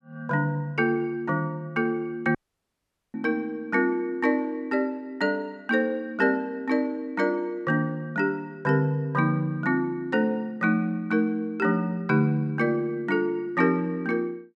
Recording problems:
dropout; at 2.5 s for 1 s

